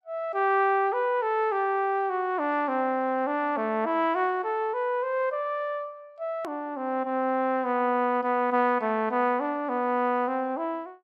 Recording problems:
hard cut with a click; at 6.5 s

